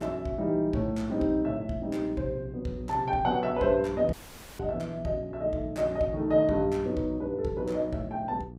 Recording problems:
hum; 60 Hz, harmonics up to 780 Hz, SNR 16 dB
dropout; at 4 s

